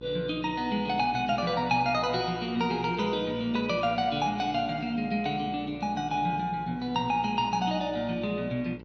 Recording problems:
electrical hum; 60 Hz, harmonics up to 1.6 kHz, SNR 18 dB

